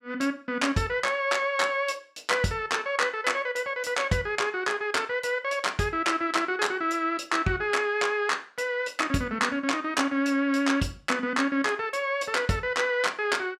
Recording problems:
none

